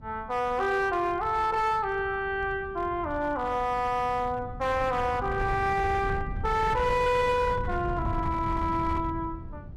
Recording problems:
distorted audio; hard clipping, signal-to-distortion ratio 11 dB
wind on the microphone; below 150 Hz, SNR 10 dB

